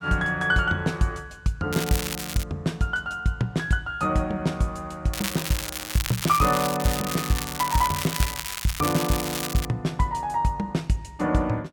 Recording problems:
crackling; at 1.5 s and from 5 to 9.5 s; loose cable, SNR 5 dB

